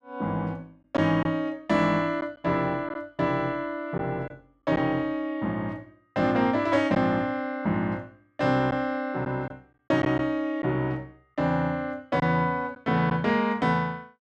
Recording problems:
lost packets; 2% of the sound replaced, filled with silence

